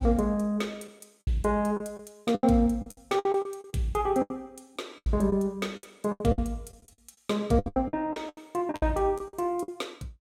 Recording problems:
packet loss; 16% of the sound replaced, filled with the last packet

